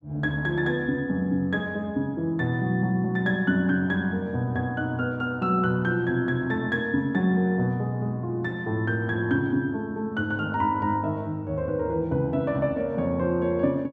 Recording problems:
none

